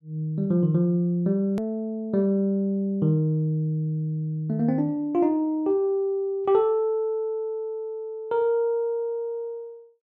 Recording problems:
click at an edit; at 1.5 s

